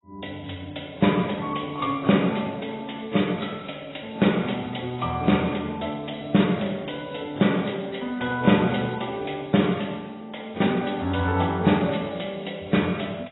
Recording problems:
codec artefacts; AAC, log-spectral distance 8 dB, nothing above 3.9 kHz

